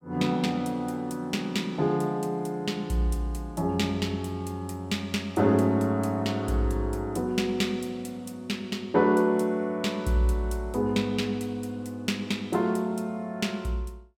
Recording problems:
none

